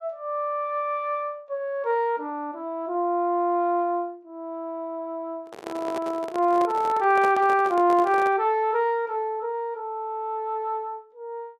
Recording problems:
handling noise; from 5.5 to 8.5 s; peak -3 dB vs average level

